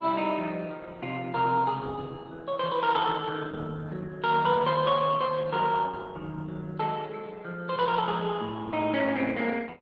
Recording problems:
lossy codec; Opus, log-spectral distance 4 dB

